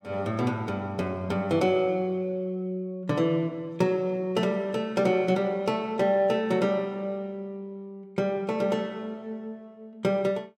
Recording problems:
none

